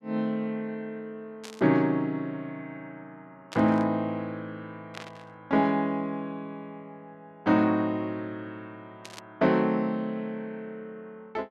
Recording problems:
static burst; 4 times, first at 1.5 s; peak -8 dB vs average level

